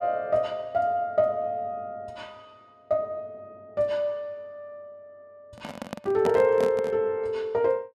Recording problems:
handling noise; from 5.5 to 7 s; peak -1 dB vs average level

